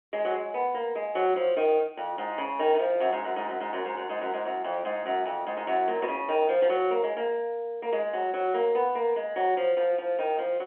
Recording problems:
telephone audio; 300 Hz to 3.3 kHz, G.711

